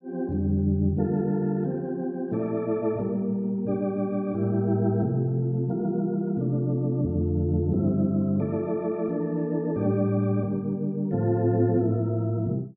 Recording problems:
none

